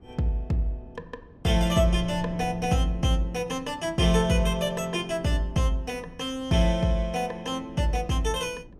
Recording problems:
wind noise; below 230 Hz, SNR 20 dB

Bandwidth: 14.5 kHz